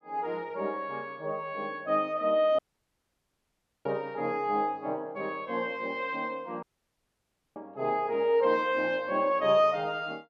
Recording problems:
audio cutting out; at 2.5 s for 1.5 s and at 6.5 s for 1 s

